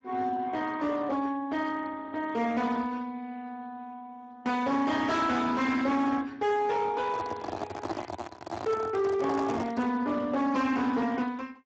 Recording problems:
codec artefacts; Speex, log-spectral distance 4 dB, nothing above 7.3 kHz
distortion; hard clipping, signal-to-distortion ratio 11 dB
microphone handling noise; from 7 to 10 s; peak 0 dB vs average level

